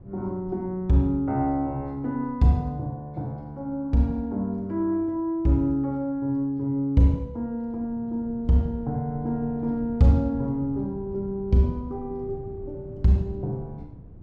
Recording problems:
wind on the microphone; below 180 Hz, SNR 18 dB

